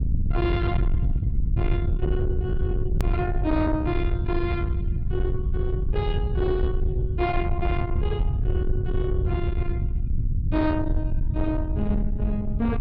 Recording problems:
treble cut off; nothing above 5.5 kHz
distorted audio; soft clipping, signal-to-distortion ratio 10 dB
low-frequency rumble; below 100 Hz, SNR -2 dB
hard cut with a click; at 3 s

